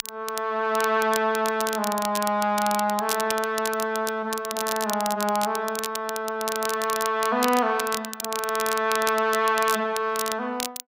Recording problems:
crackling; vinyl, SNR 8 dB

